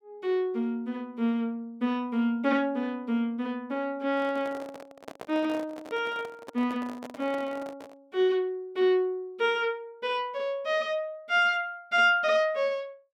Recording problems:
microphone handling noise; from 4 to 8 s; peak -8 dB vs average level

